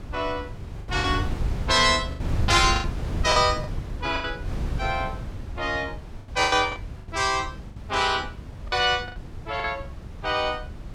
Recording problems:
wind on the microphone; below 130 Hz, SNR 9 dB
lost packets; 9% of the sound replaced, filled with the last packet

